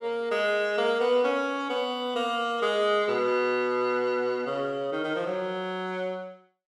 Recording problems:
none

